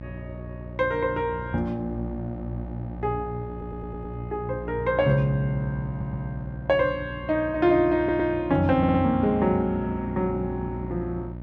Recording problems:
electrical hum; 60 Hz, harmonics up to 900 Hz, SNR 11 dB
stutter; 4 times, first at 3.5 s

